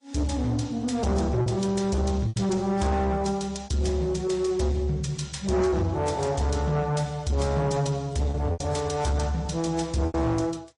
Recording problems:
lossy compression; MP3, then AAC, log-spectral distance 3 dB, nothing above 10.1 kHz
distortion; soft clipping, signal-to-distortion ratio 10 dB
packet loss; 4% of the sound replaced, filled with repeated pitch periods

